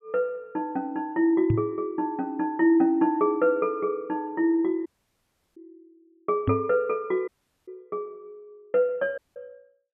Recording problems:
treble missing; nothing above 3.4 kHz
knock on the microphone; at 1.5 s and at 6.5 s; peak +4 dB vs average level
dropout; at 5 s for 0.5 s, at 7.5 s and at 9 s

